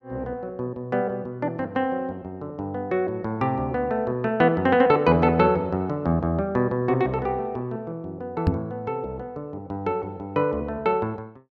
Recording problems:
microphone thump; at 8.5 s; peak +7 dB vs average level

